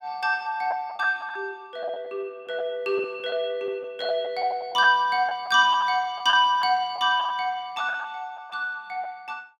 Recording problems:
packet loss; 6% of the sound replaced, filled with the last packet

